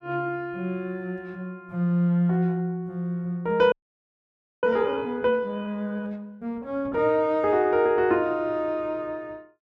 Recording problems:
frozen audio; at 3.5 s for 1 s

